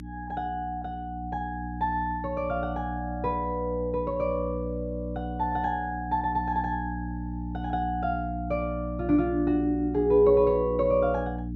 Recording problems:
hum; 60 Hz, harmonics up to 300 Hz, SNR 7 dB

